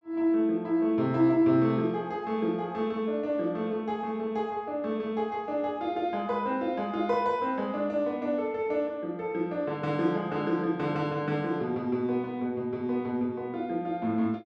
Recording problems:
none

